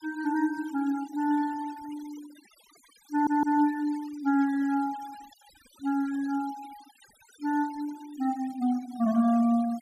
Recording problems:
noise reduction artefacts; signal-to-artefact ratio 21 dB
audio stuttering; at 3 s

